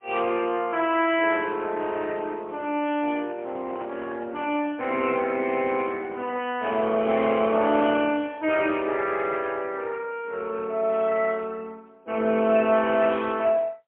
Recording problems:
telephone audio; 240 Hz to 3.2 kHz, AMR-NB, then MP3
crackle; at 0.5 s; loose cable, SNR 27 dB
microphone handling noise; from 3 to 6.5 s; peak -10 dB vs average level

